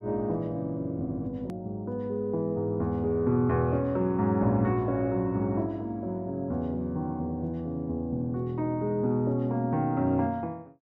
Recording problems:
click at an edit; at 1.5 s

